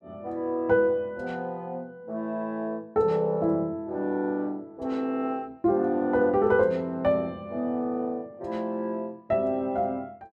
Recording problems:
none

